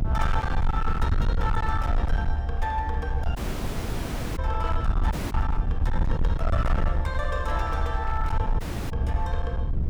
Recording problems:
distorted audio; hard clipping, uneven, signal-to-distortion ratio 7 dB
rumble; below 74 Hz, SNR -3 dB
dropout; at 3.5 s for 1 s, at 5 s and at 8.5 s

